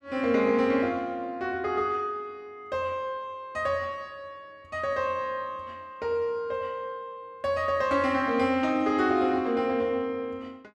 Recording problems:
none

